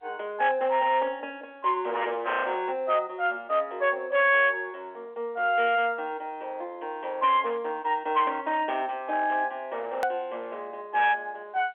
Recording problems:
phone line; 320 Hz to 3.9 kHz, G.711
distorted audio; hard clipping, signal-to-distortion ratio 11 dB
edit click; at 10 s

